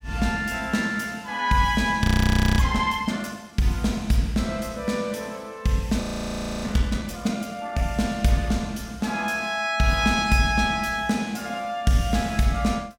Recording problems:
audio freezing; at 2 s for 0.5 s and at 6 s for 0.5 s

